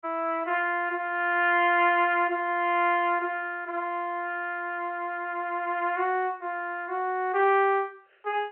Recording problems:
telephone audio; 320 Hz to 3.3 kHz, G.711

